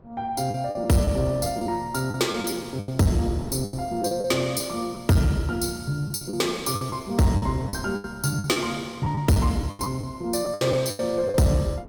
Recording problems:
distortion; soft clipping, signal-to-distortion ratio 11 dB
wind on the microphone; below 410 Hz, SNR 20 dB
packet loss; 12% of the sound replaced, filled with the last packet

